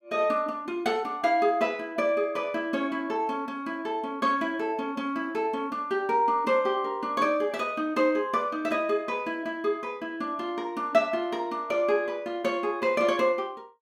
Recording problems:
none

